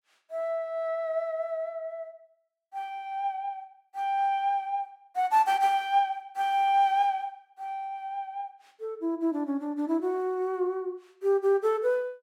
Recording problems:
none

